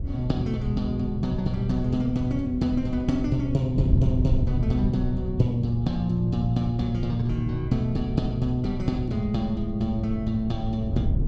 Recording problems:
wind on the microphone; below 130 Hz, SNR 5 dB

